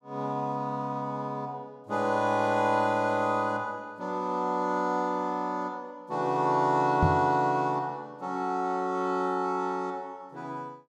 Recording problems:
microphone thump; at 7 s; peak +6 dB vs average level

